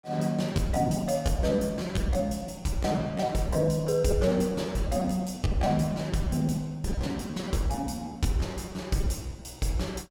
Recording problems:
lost packets; 16% of the sound replaced, filled with repeated pitch periods

